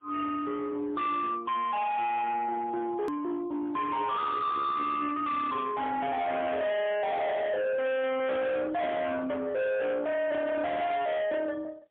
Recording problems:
phone line; 990 Hz to 2.1 kHz, AMR-NB, then MP3
distortion; hard clipping, signal-to-distortion ratio 6 dB
edit click; at 3 s

